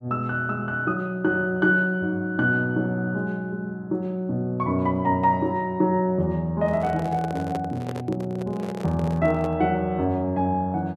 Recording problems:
microphone handling noise; from 6.5 to 9.5 s; peak -5 dB vs average level

